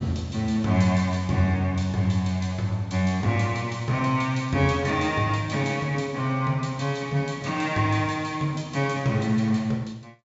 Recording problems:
treble missing; nothing above 8 kHz

